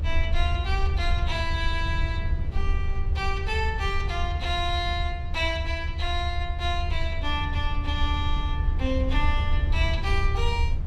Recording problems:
low-frequency rumble; below 76 Hz, SNR -1 dB

